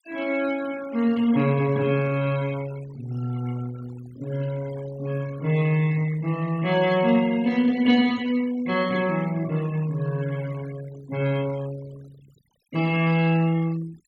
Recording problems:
denoising artefacts; signal-to-artefact ratio 20 dB

